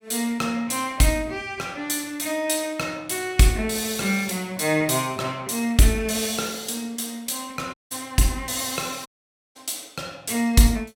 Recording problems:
dropout; at 7.5 s and at 9 s

